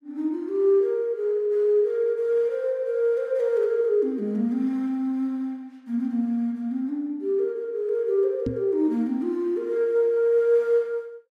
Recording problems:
microphone bump; at 8.5 s; peak 0 dB vs average level

